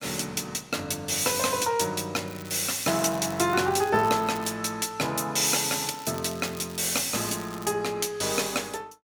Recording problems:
crackling; from 2.5 to 4.5 s and from 6 to 7.5 s; loose cable, SNR 18 dB

